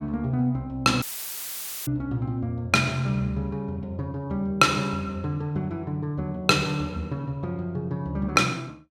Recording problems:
audio cutting out; at 1 s for 1 s; filled with static

